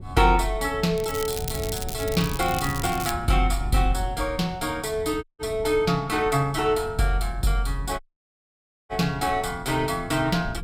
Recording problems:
wind on the microphone; below 150 Hz, SNR 12 dB
crackle; from 1 to 3 s; loose cable, SNR 10 dB
audio cutting out; at 5 s and at 8 s for 1 s

